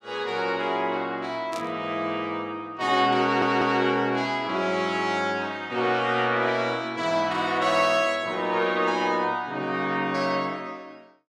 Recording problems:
static burst; at 1.5 s; peak -9 dB vs average level
audio stuttering; at 3 s

